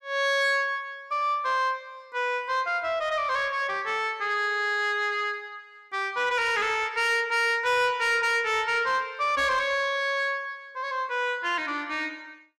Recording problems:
distortion; soft clipping, signal-to-distortion ratio 12 dB

